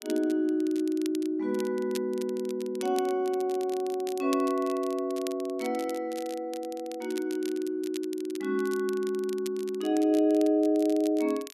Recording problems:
crackle; vinyl, SNR 18 dB

